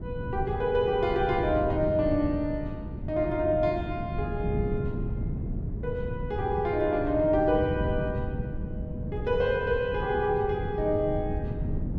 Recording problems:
wind noise; below 190 Hz, SNR 6 dB

